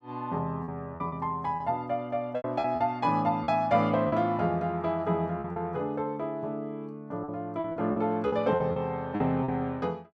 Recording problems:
packet loss; 8% of the sound replaced, filled with repeated pitch periods

